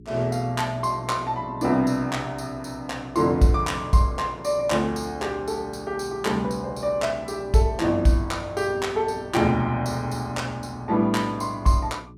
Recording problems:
hum; 60 Hz, harmonics up to 420 Hz, SNR 21 dB

